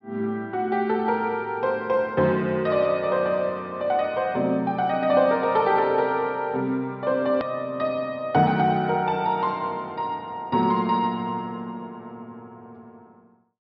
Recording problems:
treble cut off; nothing above 5.5 kHz
edit click; at 7.5 s

